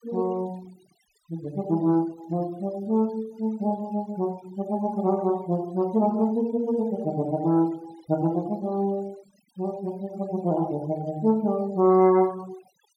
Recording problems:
denoising artefacts; signal-to-artefact ratio 26 dB

